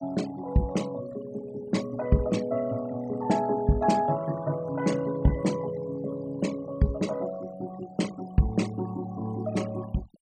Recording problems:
noise reduction artefacts; signal-to-artefact ratio 18 dB

